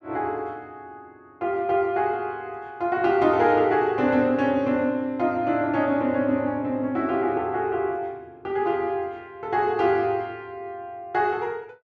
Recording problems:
none

